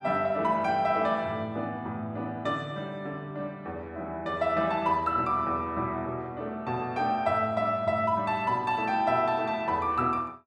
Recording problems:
none

